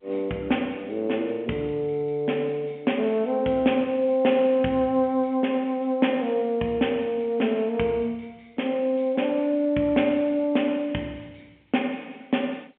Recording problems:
telephone audio; 170 Hz to 3.4 kHz, G.711

